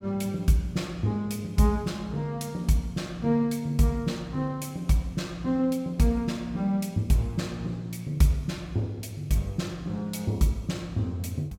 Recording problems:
none

